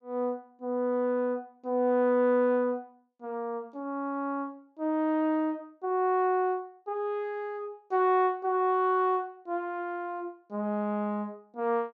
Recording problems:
none

